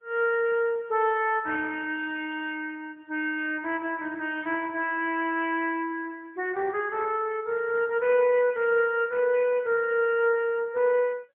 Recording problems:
telephone audio; 340 Hz to 3.4 kHz, AMR-NB, then MP3

